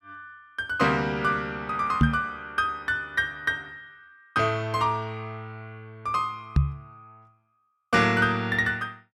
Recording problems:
microphone bump; at 2 s and at 6.5 s; peak +9 dB vs average level

